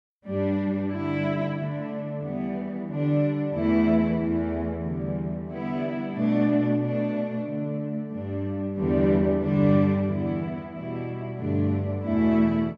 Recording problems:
none

